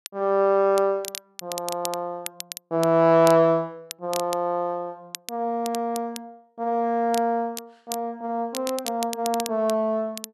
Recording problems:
crackling; vinyl, SNR 13 dB

